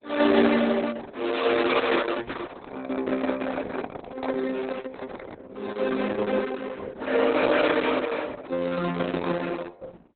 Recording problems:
lossy compression; MP2, then Opus, log-spectral distance 5 dB, nothing above 4 kHz
microphone handling noise; from 2.5 to 5.5 s; peak -4 dB vs average level

